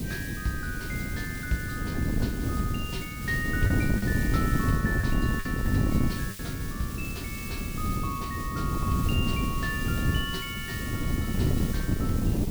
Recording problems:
electrical hum; 60 Hz, harmonics up to 1.4 kHz, SNR 19 dB
background hiss; SNR 6 dB
wind noise; below 240 Hz, SNR -4 dB
lost packets; 1.8% of the sound replaced, filled with the last packet

